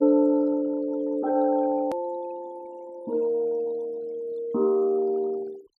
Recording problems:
denoising artefacts; signal-to-artefact ratio 24 dB
click at an edit; at 2 s

